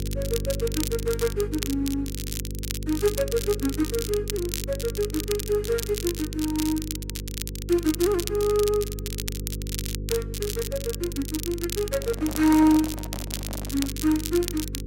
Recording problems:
hum; 50 Hz, harmonics up to 500 Hz, SNR 8 dB
crackle; vinyl, SNR 8 dB
microphone handling noise; from 12 to 14 s; peak -8 dB vs average level

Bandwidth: 16 kHz